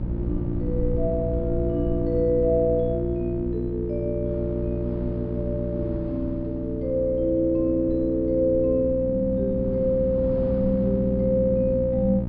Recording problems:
low-pass filter; nothing above 5.5 kHz
hum; 60 Hz, harmonics up to 660 Hz, SNR 6 dB
low-frequency rumble; below 110 Hz, SNR 13 dB
wind on the microphone; below 260 Hz, SNR 17 dB

